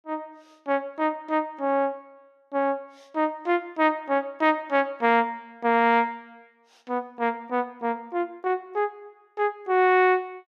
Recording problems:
none

